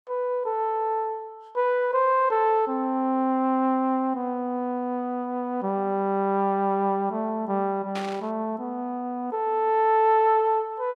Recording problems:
burst of static; at 8 s; peak -7 dB vs average level

